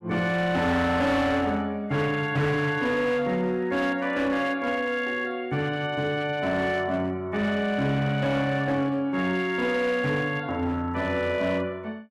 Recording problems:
distorted audio; hard clipping, signal-to-distortion ratio 11 dB

